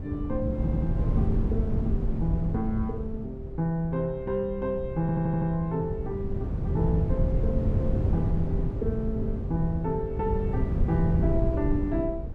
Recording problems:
wind noise; below 140 Hz, SNR -1 dB
audio stuttering; at 0.5 s and at 5 s

